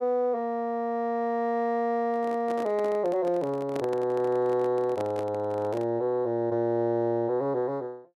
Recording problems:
microphone handling noise; from 2 to 6 s; peak -5 dB vs average level

